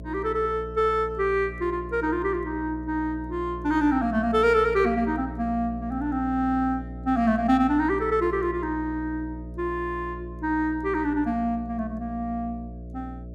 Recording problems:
hum; 60 Hz, harmonics up to 660 Hz, SNR 13 dB

